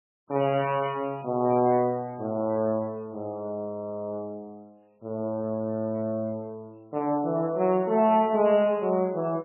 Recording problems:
codec artefacts; MP3, log-spectral distance 2 dB, nothing above 2.5 kHz

